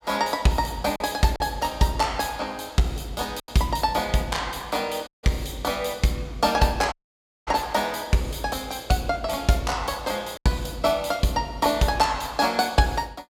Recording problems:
lost packets; 1.9% of the sound replaced, filled with silence
dropout; at 5 s and at 7 s for 0.5 s

